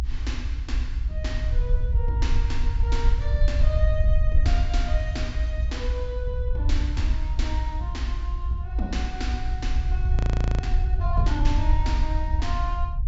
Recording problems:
low-pass filter; nothing above 8 kHz
rumble; below 64 Hz, SNR -7 dB
frozen audio; at 10 s

